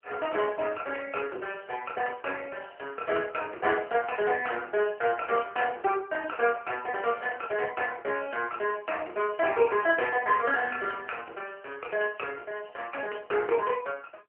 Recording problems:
telephone audio; 340 Hz to 2.5 kHz, AMR-NB

